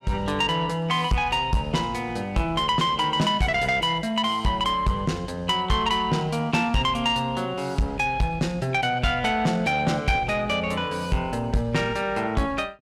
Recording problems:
distorted audio; soft clipping, signal-to-distortion ratio 11 dB

